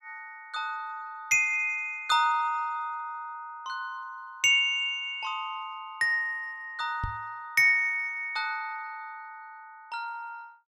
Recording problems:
microphone thump; at 7 s; peak -3 dB vs average level

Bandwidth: 16 kHz